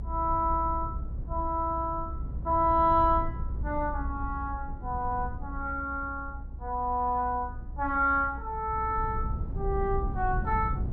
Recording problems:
low-frequency rumble; below 84 Hz, SNR 7 dB

